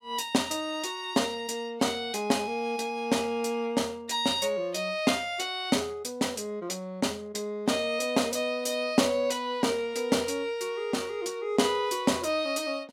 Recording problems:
none

